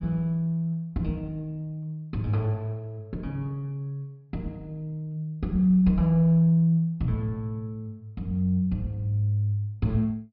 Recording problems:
treble missing; nothing above 5.5 kHz

